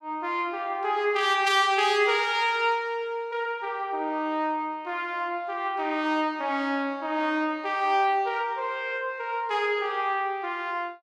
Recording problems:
none

